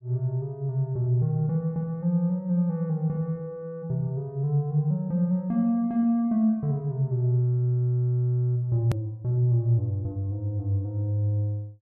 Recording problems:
edit click; at 9 s

